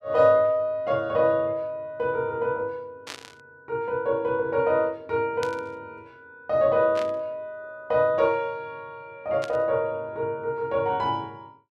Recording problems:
static burst; 4 times, first at 3 s; peak -6 dB vs average level

